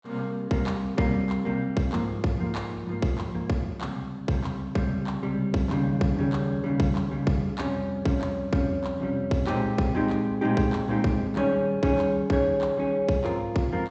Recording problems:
low-pass filter; nothing above 8 kHz

